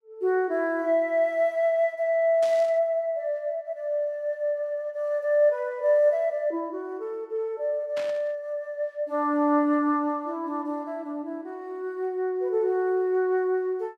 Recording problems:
burst of static; at 2.5 s and at 8 s; peak -10 dB vs average level

